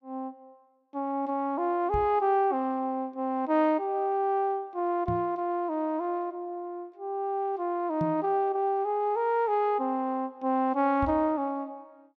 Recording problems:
microphone bump; 4 times, first at 2 s; peak -1 dB vs average level

